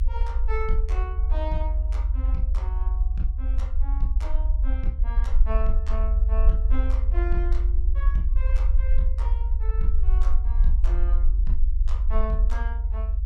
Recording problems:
rumble; below 48 Hz, SNR -12 dB

